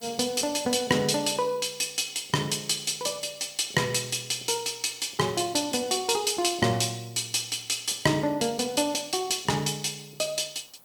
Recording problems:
background hiss; SNR 27 dB

